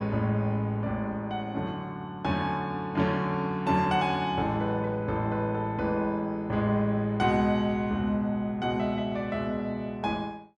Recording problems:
none

